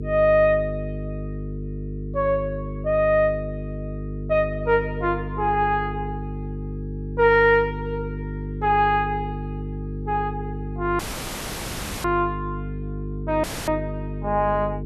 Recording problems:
hum; 50 Hz, harmonics up to 450 Hz, SNR 9 dB
audio cutting out; at 11 s for 1 s and at 13 s

